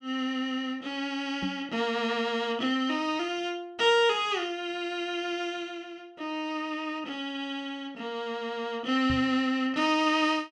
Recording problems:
microphone bump; at 1.5 s and at 9 s; peak -2 dB vs average level

